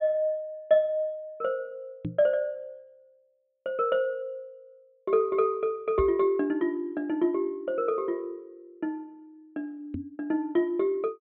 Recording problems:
treble missing; nothing above 4 kHz
microphone bump; at 2 s, at 6 s and at 10 s; peak -1 dB vs average level

